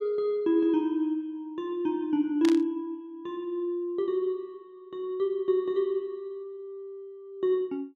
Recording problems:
burst of static; at 2.5 s; peak -3 dB vs average level

